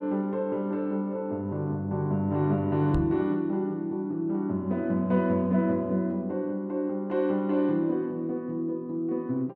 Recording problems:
microphone thump; at 3 s; peak 0 dB vs average level

